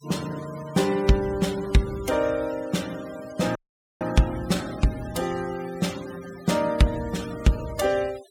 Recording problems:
denoising artefacts; signal-to-artefact ratio 17 dB
audio cutting out; at 3.5 s

